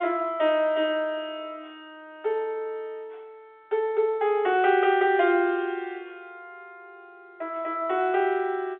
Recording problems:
phone line; 320 Hz to 3.6 kHz, G.711

